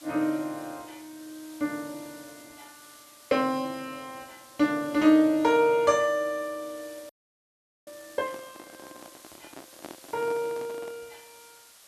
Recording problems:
hiss; slope +1 dB per octave, SNR 23 dB
audio freezing; at 7 s for 1 s
handling noise; from 8 to 11 s; peak -10 dB vs average level

